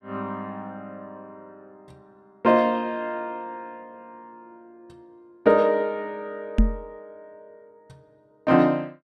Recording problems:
microphone bump; at 6.5 s; peak +7 dB vs average level

